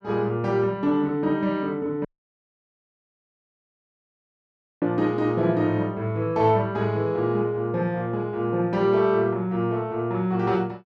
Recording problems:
audio cutting out; at 2 s for 3 s

